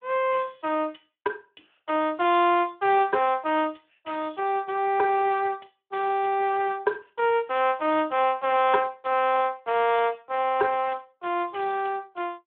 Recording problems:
telephone audio; 280 Hz to 3.5 kHz, Speex

